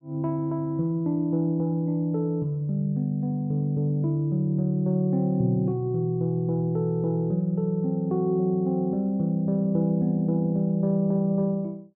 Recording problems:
none

